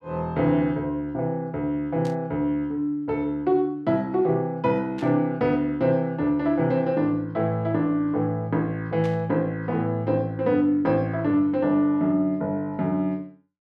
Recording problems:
static burst; at 2 s, at 5 s and at 9 s; peak -13 dB vs average level

